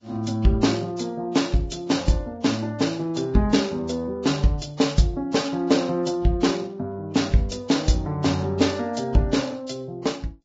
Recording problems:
codec artefacts; Vorbis, log-spectral distance 3 dB, nothing above 7.3 kHz

